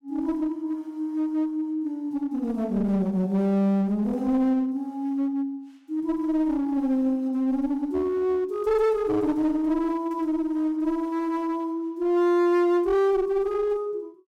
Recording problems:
distortion; hard clipping, uneven, signal-to-distortion ratio 9 dB

